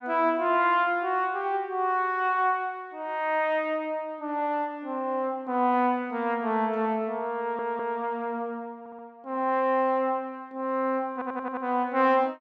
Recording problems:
audio stuttering; at 7.5 s, at 9 s and at 11 s

